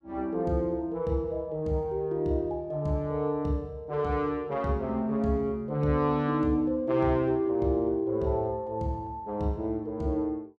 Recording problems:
none

